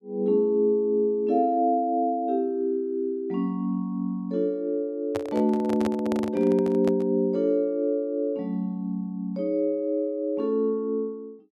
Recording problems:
microphone handling noise; from 5 to 7 s; peak -2 dB vs average level

